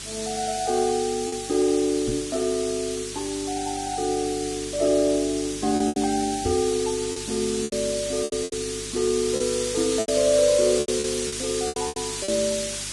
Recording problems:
lossy codec; Vorbis, log-spectral distance 12 dB, nothing above 10.1 kHz
hum; 50 Hz, harmonics up to 400 Hz, SNR 19 dB
hiss; slope +3 dB per octave, SNR 6 dB
lost packets; 7% of the sound replaced, filled with repeated pitch periods
microphone thump; at 2 s and at 6.5 s; peak -1 dB vs average level

